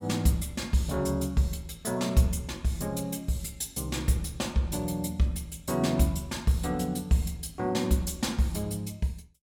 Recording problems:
none

